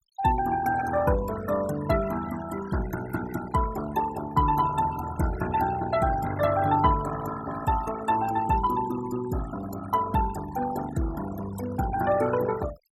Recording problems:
noise reduction artefacts; signal-to-artefact ratio 12 dB

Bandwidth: 16 kHz